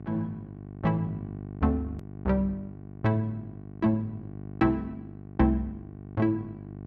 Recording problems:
hum; 50 Hz, harmonics up to 800 Hz, SNR 13 dB
click at an edit; at 2 s

